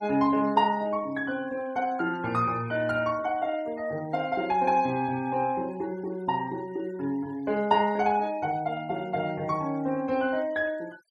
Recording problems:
denoising artefacts; signal-to-artefact ratio 25 dB

